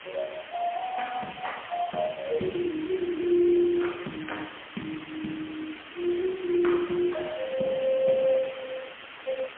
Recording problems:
telephone audio; 170 Hz to 3.3 kHz, AMR-NB, then MP3
background hiss; SNR 14 dB

